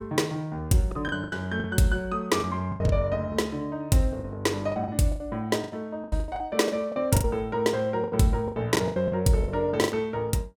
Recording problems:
packet loss; 14% of the sound replaced, filled with the last packet

